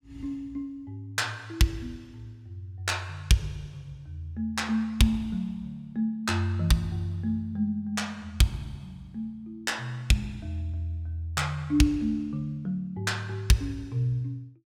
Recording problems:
none

